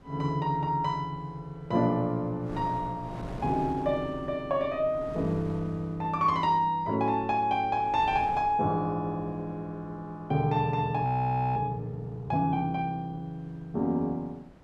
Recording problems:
wind noise; below 510 Hz, SNR 19 dB
frozen audio; at 11 s for 0.5 s

